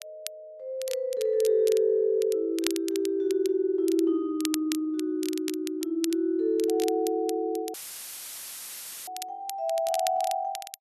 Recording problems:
crackle; vinyl, SNR 13 dB
dropout; at 7.5 s for 1.5 s; filled with static

